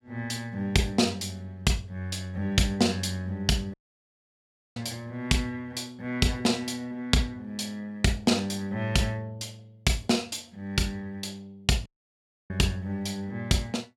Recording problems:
dropout; at 3.5 s for 1 s and at 12 s for 0.5 s

